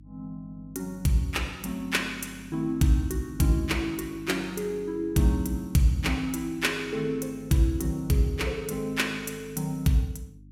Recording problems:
hum; 50 Hz, harmonics up to 300 Hz, SNR 22 dB

